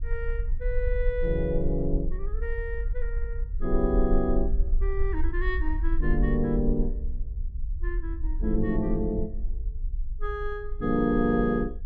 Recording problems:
rumble; below 46 Hz, SNR 3 dB

